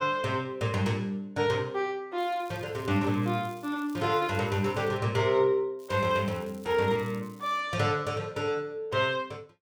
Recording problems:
crackle; from 2 to 5 s and from 6 to 7.5 s; loose cable, SNR 26 dB

